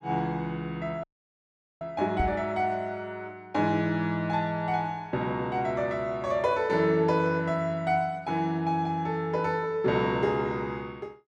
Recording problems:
dropout; at 1 s for 1 s
microphone bump; at 2 s; peak +2 dB vs average level

